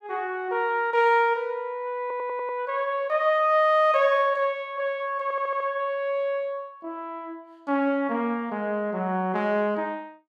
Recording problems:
audio stuttering; at 2 s and at 5 s

